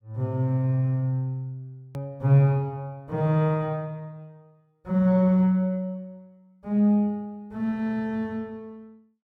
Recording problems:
hard cut with a click; at 2 s

